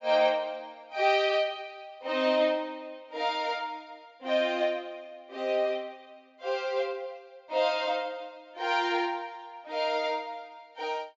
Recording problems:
treble missing; nothing above 8 kHz

